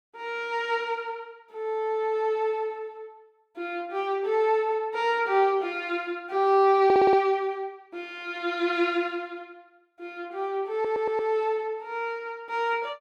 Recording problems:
audio stuttering; at 7 s and at 11 s

